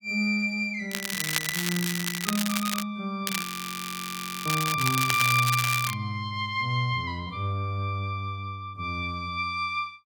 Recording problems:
crackle; from 1 to 3 s and from 3 to 6 s; loose cable, SNR 2 dB
frozen audio; at 3.5 s for 1 s

